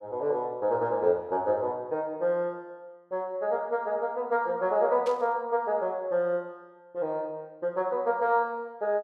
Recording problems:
burst of static; at 5 s; peak -11 dB vs average level

